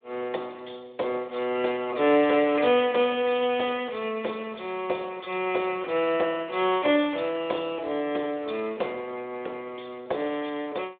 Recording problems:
telephone audio; 320 Hz to 3.6 kHz, Speex

